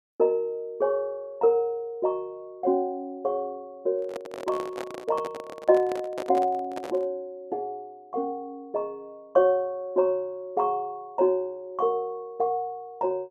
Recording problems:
microphone handling noise; from 4 to 7 s; peak -4 dB vs average level

